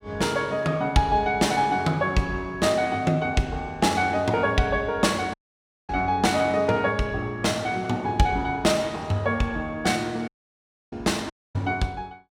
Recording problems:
audio cutting out; at 5.5 s for 0.5 s, at 10 s for 0.5 s and at 11 s

